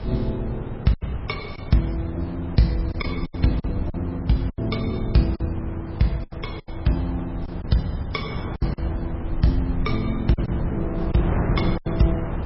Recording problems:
codec artefacts; MP3, log-spectral distance 3 dB, nothing above 5.5 kHz
background hiss; SNR 29 dB
low-frequency rumble; below 70 Hz, SNR 11 dB
wind noise; below 400 Hz, SNR 8 dB
lost packets; 7% of the sound replaced, filled with silence

